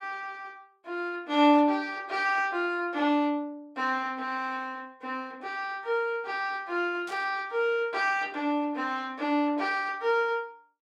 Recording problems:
burst of static; at 7 s; peak -13 dB vs average level

